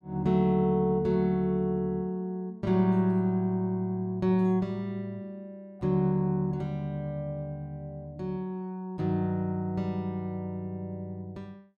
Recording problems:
none

